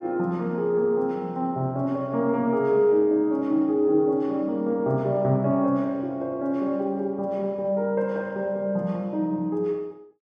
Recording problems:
none

